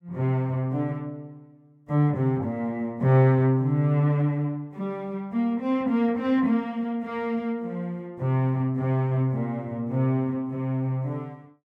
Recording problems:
none

